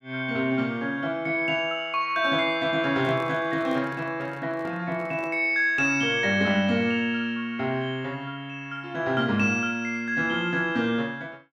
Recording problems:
microphone handling noise; from 3 to 5.5 s; peak -10 dB vs average level

